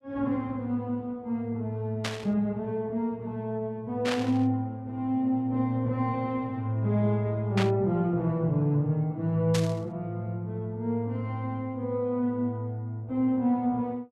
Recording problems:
static burst; 4 times, first at 2 s; peak +1 dB vs average level

